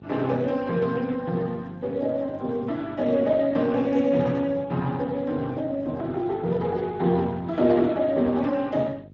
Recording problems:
codec artefacts; Speex, log-spectral distance 3 dB
hum; 50 Hz, harmonics up to 500 Hz, SNR 20 dB

